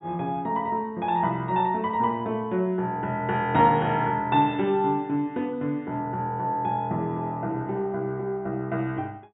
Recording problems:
treble cut off; nothing above 4 kHz

